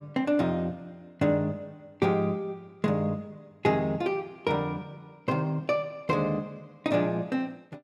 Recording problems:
none

